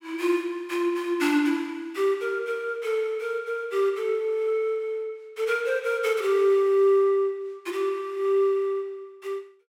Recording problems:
none

